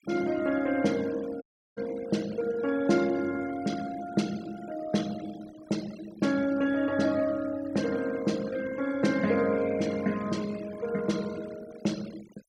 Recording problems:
noise reduction artefacts; signal-to-artefact ratio 18 dB
dropout; at 1.5 s

